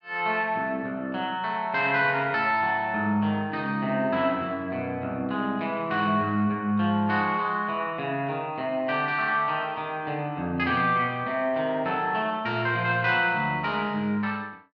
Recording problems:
none

